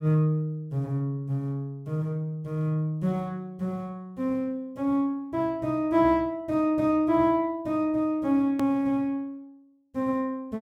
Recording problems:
click at an edit; at 8.5 s

